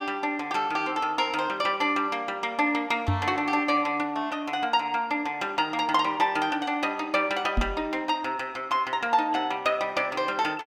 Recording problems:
microphone bump; at 3 s and at 7.5 s; peak +3 dB vs average level

